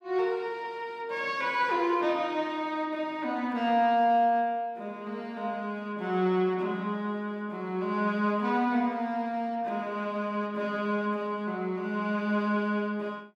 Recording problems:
none

